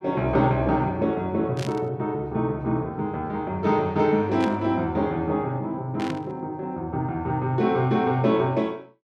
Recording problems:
burst of static; at 1.5 s, at 4.5 s and at 6 s; peak -6 dB vs average level

